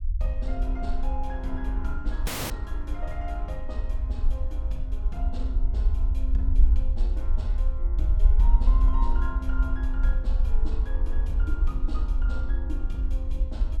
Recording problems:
low-frequency rumble; below 54 Hz, SNR -11 dB
audio cutting out; at 2.5 s

